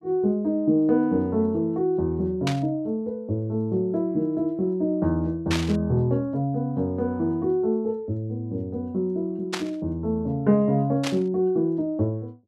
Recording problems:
burst of static; 4 times, first at 2.5 s; peak 0 dB vs average level

